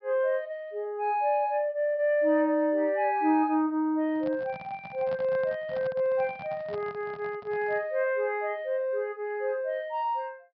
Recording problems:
treble missing; nothing above 5.5 kHz
handling noise; from 4 to 8 s; peak -10 dB vs average level

